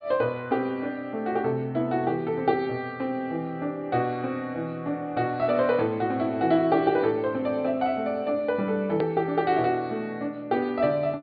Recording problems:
low-pass filter; nothing above 4.8 kHz
hard cut with a click; at 9 s

